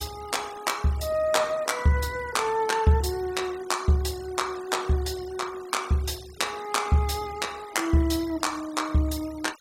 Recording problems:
denoising artefacts; signal-to-artefact ratio 19 dB

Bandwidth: 16 kHz